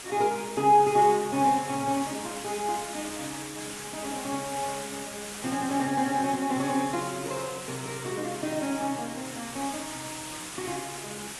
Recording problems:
lossy compression; AAC, log-spectral distance 12 dB
background hiss; slope -1 dB per octave, SNR 10 dB

